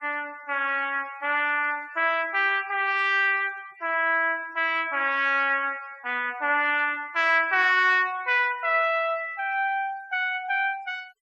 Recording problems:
noise reduction artefacts; signal-to-artefact ratio 27 dB

